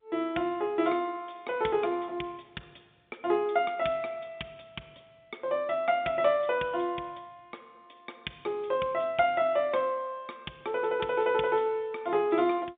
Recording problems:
telephone audio; 150 Hz to 3.7 kHz, G.711

